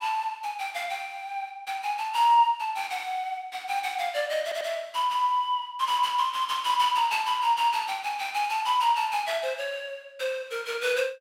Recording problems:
audio stuttering; at 4.5 s

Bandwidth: 16 kHz